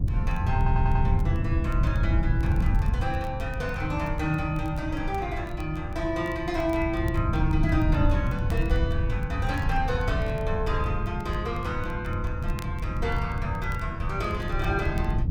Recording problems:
wind on the microphone; below 120 Hz, SNR -2 dB
crackling; vinyl, SNR 24 dB
audio stuttering; at 0.5 s

